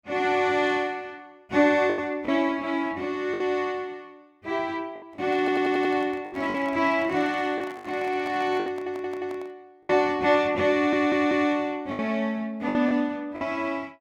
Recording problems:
packet loss; 6% of the sound replaced, filled with the last packet
microphone handling noise; from 5 to 9.5 s; peak -11 dB vs average level
audio stuttering; at 5.5 s, at 8.5 s and at 11 s

